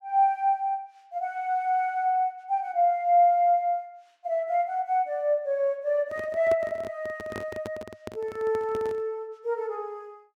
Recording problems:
handling noise; from 6 to 9 s; peak -6 dB vs average level

